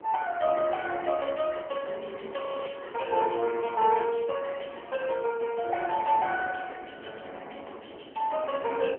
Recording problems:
phone line; 300 Hz to 3.1 kHz, AMR-NB
wind on the microphone; below 710 Hz, SNR 19 dB
audio freezing; at 2.5 s

